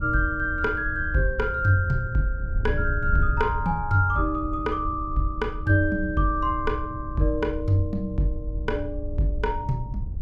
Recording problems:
wind noise; below 82 Hz, SNR 7 dB

